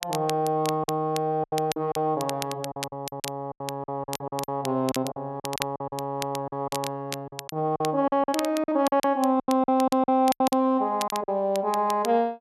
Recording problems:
crackle; vinyl, SNR 12 dB
lost packets; 13% of the sound replaced, filled with silence

